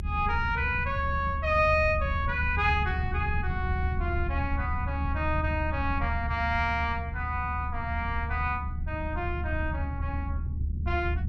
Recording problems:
rumble; below 92 Hz, strongest tone 74 Hz, SNR 3 dB

